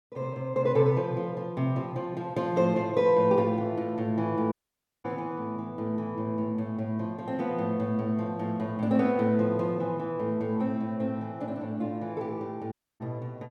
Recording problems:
audio cutting out; at 4.5 s for 0.5 s and at 13 s

